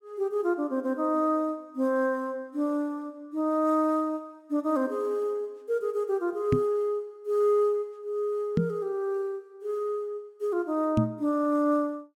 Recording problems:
microphone bump; at 6.5 s, at 8.5 s and at 11 s; peak +7 dB vs average level

